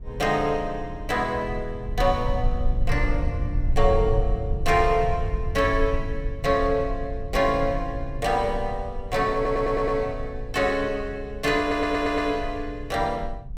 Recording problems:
low-frequency rumble; below 70 Hz, SNR 7 dB
audio stuttering; at 9.5 s and at 12 s

